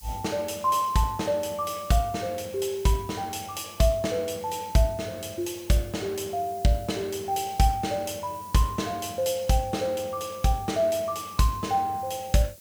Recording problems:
hiss; SNR 20 dB

